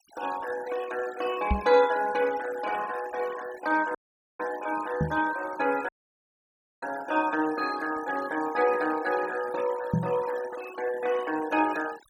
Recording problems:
denoising artefacts; signal-to-artefact ratio 15 dB
knock on the microphone; at 1.5 s, at 5 s and at 10 s; peak +5 dB vs average level
audio cutting out; at 4 s and at 6 s for 1 s

